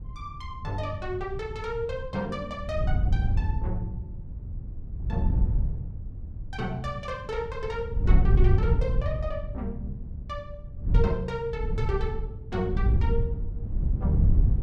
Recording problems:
wind noise; below 96 Hz, SNR -5 dB

